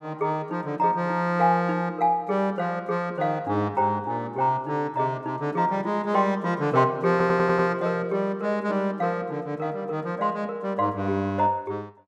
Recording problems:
stutter; at 7 s

